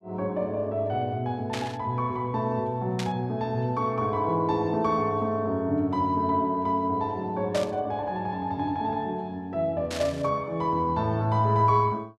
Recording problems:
static burst; 4 times, first at 1.5 s; peak -3 dB vs average level

